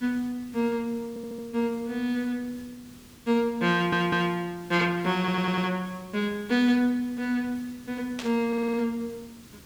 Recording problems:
hiss; SNR 22 dB
stutter; 4 times, first at 1 s
burst of static; at 8 s; peak -4 dB vs average level

